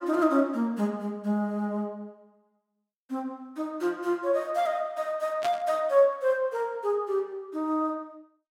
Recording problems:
static burst; at 5.5 s; peak -4 dB vs average level

